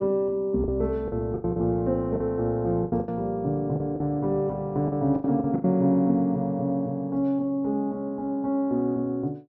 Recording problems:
packet loss; 8% of the sound replaced, filled with the last packet

